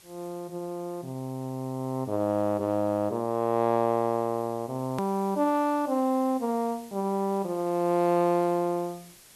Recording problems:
hiss; slope 0 dB per octave, SNR 24 dB
hard cut with a click; at 5 s

